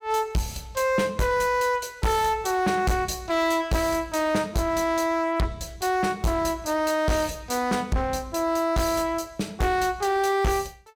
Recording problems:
distorted audio; hard clipping, uneven, signal-to-distortion ratio 7 dB

